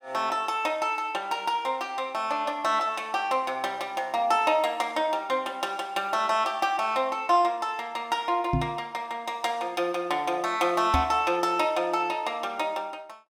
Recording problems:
microphone thump; at 8.5 s and at 11 s; peak +3 dB vs average level

